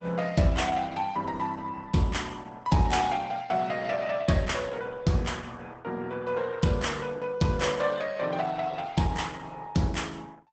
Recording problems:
lossy compression; Opus, log-spectral distance 4 dB, nothing above 8 kHz

